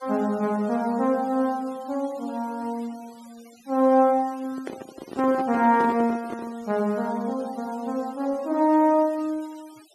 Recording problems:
denoising artefacts; signal-to-artefact ratio 25 dB
handling noise; from 4.5 to 6.5 s; peak -5 dB vs average level

